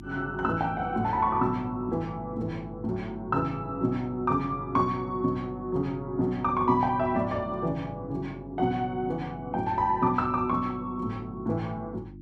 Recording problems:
mains hum; 50 Hz, harmonics up to 350 Hz, SNR 15 dB

